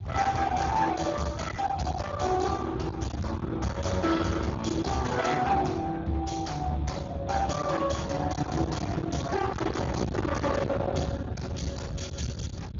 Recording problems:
low-pass filter; nothing above 6.9 kHz
lossy codec; Speex, log-spectral distance 4 dB
distorted audio; hard clipping, signal-to-distortion ratio 7 dB
low-frequency rumble; below 700 Hz, SNR 7 dB

